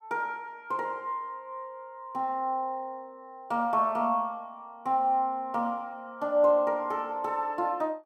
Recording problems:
none

